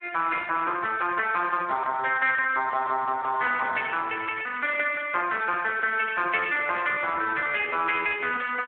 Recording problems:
phone line; 260 Hz to 3.5 kHz, Speex

